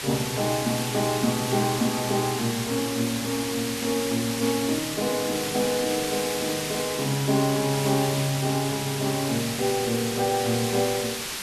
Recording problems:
hiss; SNR 4 dB

